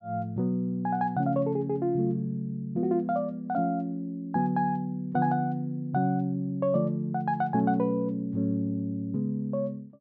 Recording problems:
none

